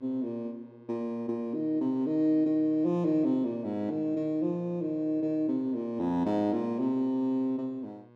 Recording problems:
hum; 60 Hz, harmonics up to 1.7 kHz, SNR 25 dB

